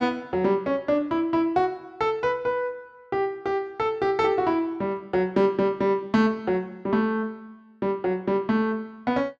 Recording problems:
none

